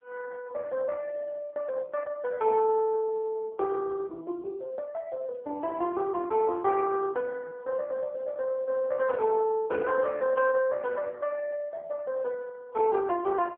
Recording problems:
phone line; 300 Hz to 2.2 kHz, AMR-NB

